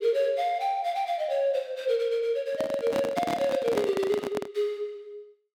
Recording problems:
handling noise; from 2.5 to 4.5 s; peak +2 dB vs average level

